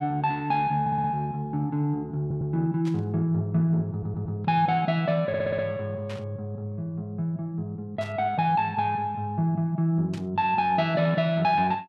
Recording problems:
stutter; 4 times, first at 1 s
static burst; 4 times, first at 3 s; peak -11 dB vs average level

